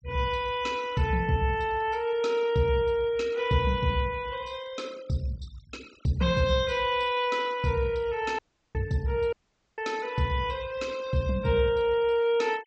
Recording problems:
treble missing; nothing above 8 kHz
denoising artefacts; signal-to-artefact ratio 23 dB
dropout; at 8.5 s and at 9.5 s

